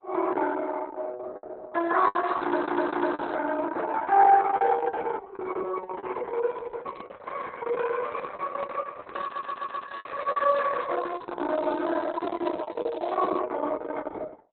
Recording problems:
codec artefacts; Opus, log-spectral distance 5 dB, nothing above 3.9 kHz
packet loss; 6% of the sound replaced, filled with the last packet
crackling; from 2 to 3.5 s and from 9 to 13 s; loose cable, SNR 26 dB
stutter; at 2.5 s and at 9 s
microphone handling noise; from 6.5 to 11 s; peak -6 dB vs average level

